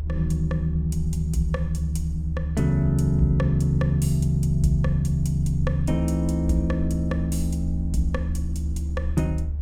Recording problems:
low-frequency rumble; below 74 Hz, strongest tone 72 Hz, SNR 4 dB

